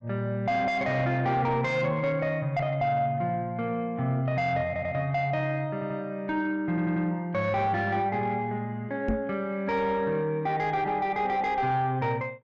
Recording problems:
treble cut off; nothing above 8 kHz
distortion; soft clipping, signal-to-distortion ratio 10 dB
audio stuttering; at 4.5 s, at 5.5 s and at 6.5 s
microphone bump; at 9 s; peak +4 dB vs average level

